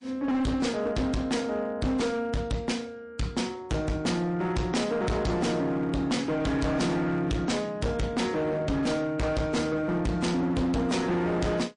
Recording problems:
codec artefacts; MP3, log-spectral distance 2 dB, nothing above 9.5 kHz
distortion; hard clipping, signal-to-distortion ratio 6 dB

